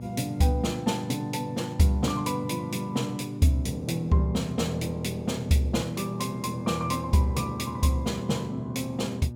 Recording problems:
electrical hum; 60 Hz, harmonics up to 600 Hz, SNR 11 dB

